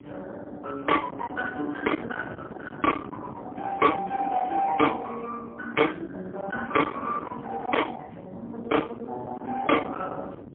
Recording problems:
telephone audio; 170 Hz to 3.4 kHz, AMR-NB, then MP3
distorted audio; hard clipping, uneven, signal-to-distortion ratio 9 dB
wind noise; below 1.5 kHz, SNR 11 dB

